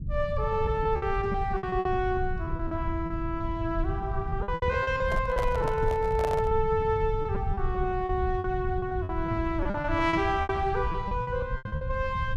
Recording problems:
rumble; below 110 Hz, SNR 5 dB
packet loss; 15% of the sound replaced, filled with repeated pitch periods
microphone handling noise; from 5 to 6.5 s; peak 0 dB vs average level

